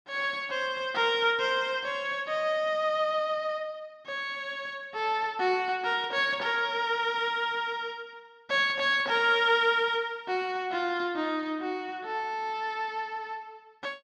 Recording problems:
none

